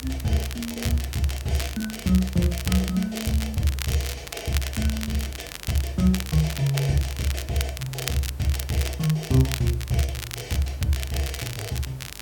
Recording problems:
hum; 50 Hz, harmonics up to 300 Hz, SNR 22 dB
background hiss; slope -5 dB per octave, SNR 22 dB
crackling; vinyl, SNR 9 dB
lost packets; 1.3% of the sound replaced, filled with repeated pitch periods

